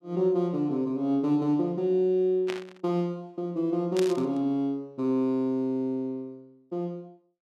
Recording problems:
burst of static; at 2.5 s and at 4 s; peak -3 dB vs average level

